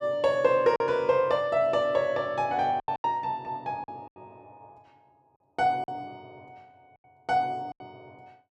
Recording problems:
packet loss; 7% of the sound replaced, filled with silence

